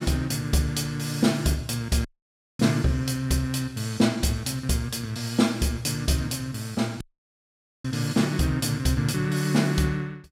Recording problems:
dropout; at 2 s for 0.5 s and at 7 s for 1 s

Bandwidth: 16 kHz